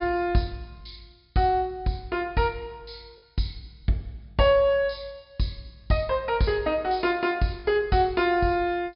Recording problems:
low-pass filter; nothing above 5.5 kHz
lost packets; 1% of the sound replaced, filled with the last packet

